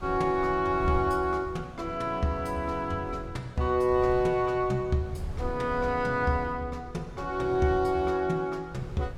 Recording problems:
wind on the microphone; below 120 Hz, SNR 14 dB

